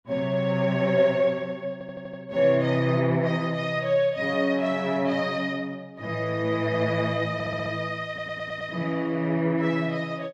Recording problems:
stutter; at 1.5 s, at 7.5 s and at 8 s

